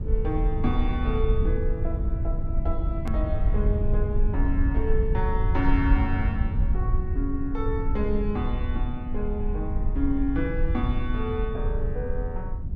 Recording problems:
low-frequency rumble; below 72 Hz, SNR -3 dB
edit click; at 3 s

